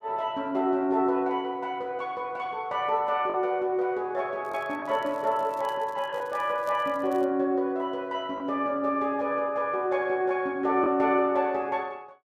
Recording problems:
lost packets; 1.3% of the sound replaced, filled with the last packet
crackle; from 4.5 to 7 s; loose cable, SNR 28 dB

